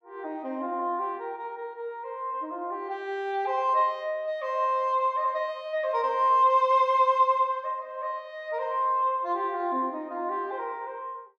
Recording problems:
none

